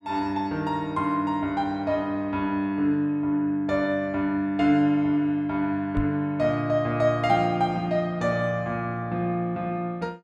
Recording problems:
microphone thump; at 6 s; peak -1 dB vs average level

